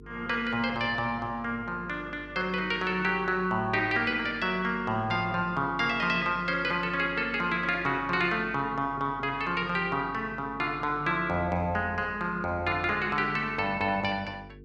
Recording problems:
hum; 50 Hz, harmonics up to 450 Hz, SNR 21 dB

